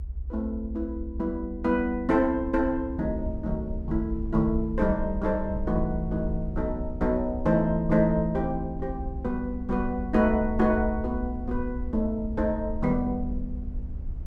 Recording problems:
low-frequency rumble; below 68 Hz, SNR 8 dB

